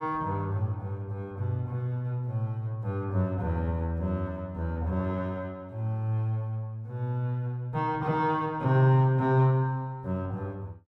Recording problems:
none

